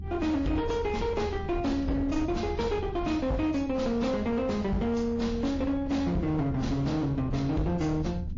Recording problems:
lossy compression; MP3, then AAC, log-spectral distance 2 dB, nothing above 6.5 kHz
distorted audio; hard clipping, uneven, signal-to-distortion ratio 10 dB
rumble; below 120 Hz, SNR 10 dB

